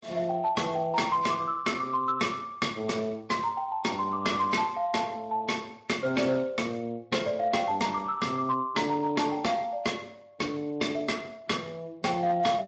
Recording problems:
codec artefacts; Speex, then MP3, log-spectral distance 4 dB, nothing above 7.6 kHz
distortion; hard clipping, signal-to-distortion ratio 11 dB

